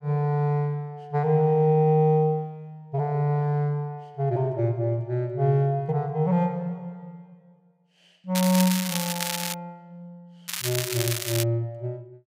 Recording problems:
crackling; from 8.5 to 9.5 s and at 10 s; loose cable, SNR 4 dB

